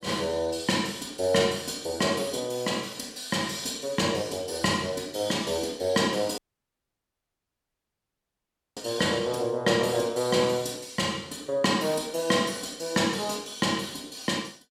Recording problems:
audio cutting out; at 6.5 s for 2.5 s

